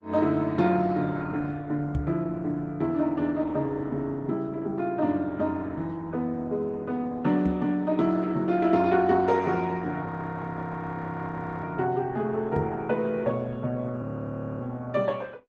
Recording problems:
lossy codec; Opus, log-spectral distance 2 dB
microphone bump; at 2 s, at 7.5 s and at 13 s; peak +3 dB vs average level
frozen audio; at 10 s for 1.5 s and at 14 s for 0.5 s

